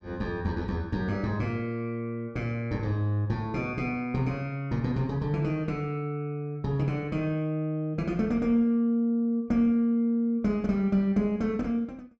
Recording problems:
none

